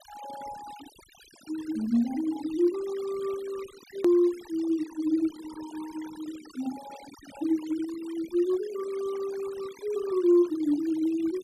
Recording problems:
denoising artefacts; signal-to-artefact ratio 20 dB
edit click; at 4 s

